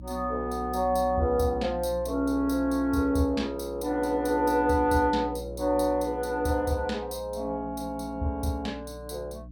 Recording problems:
hum; 60 Hz, harmonics up to 300 Hz, SNR 15 dB

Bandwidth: 17.5 kHz